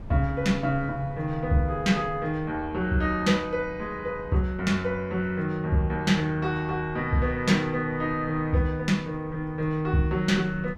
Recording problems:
wind on the microphone; below 160 Hz, SNR 19 dB

